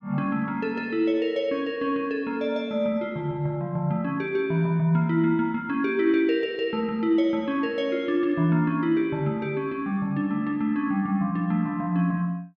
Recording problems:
none

